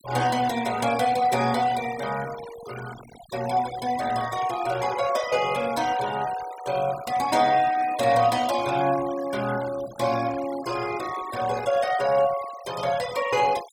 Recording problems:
noise reduction artefacts; signal-to-artefact ratio 15 dB

